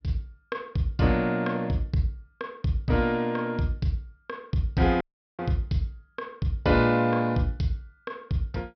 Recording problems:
low-pass filter; nothing above 5.5 kHz
audio cutting out; at 5 s

